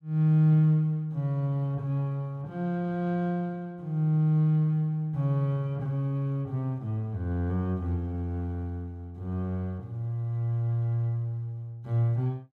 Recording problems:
none

